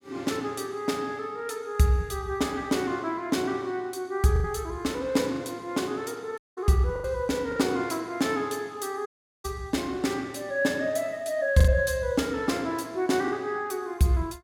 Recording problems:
packet loss; 3% of the sound replaced, filled with the last packet
dropout; at 6.5 s and at 9 s

